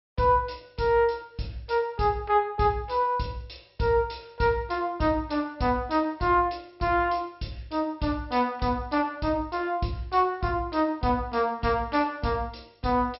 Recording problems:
treble cut off; nothing above 5.5 kHz

